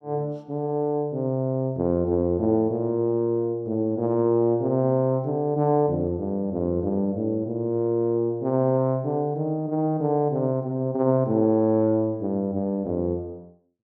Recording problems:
none

